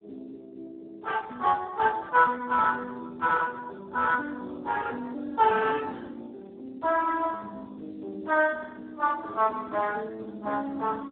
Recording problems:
telephone audio; 240 Hz to 2.6 kHz, Speex

